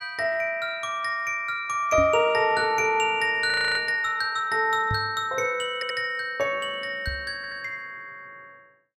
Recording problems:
microphone bump; at 2 s, at 5 s and at 7 s; peak -2 dB vs average level
frozen audio; at 3.5 s
stutter; at 6 s and at 7.5 s

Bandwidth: 15.5 kHz